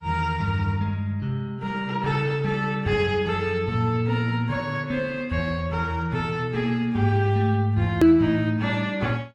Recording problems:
lossy compression; AAC, log-spectral distance 2 dB, nothing above 20.1 kHz
hard cut with a click; at 8 s

